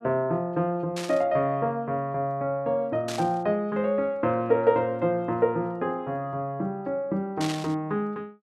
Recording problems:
static burst; at 1 s, at 3 s and at 7.5 s; peak -4 dB vs average level

